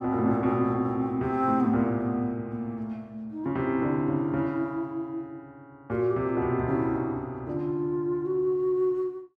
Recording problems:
none

